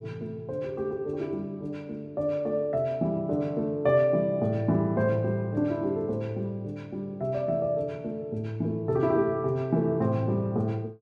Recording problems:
none

